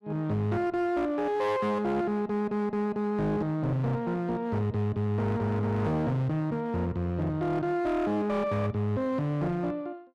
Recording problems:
distorted audio; hard clipping, signal-to-distortion ratio 11 dB

